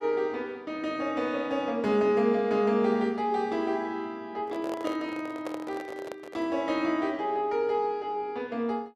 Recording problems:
microphone handling noise; from 4.5 to 6.5 s; peak -2 dB vs average level

